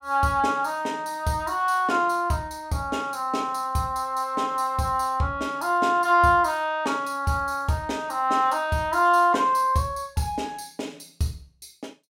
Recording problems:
none

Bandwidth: 16 kHz